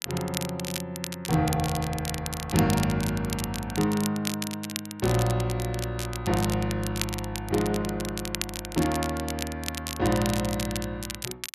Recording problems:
crackle; vinyl, SNR 7 dB

